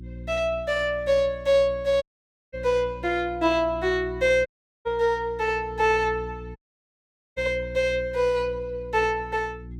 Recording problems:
electrical hum; 60 Hz, harmonics up to 360 Hz, SNR 16 dB
dropout; at 2 s for 0.5 s, at 4.5 s and at 6.5 s for 1 s

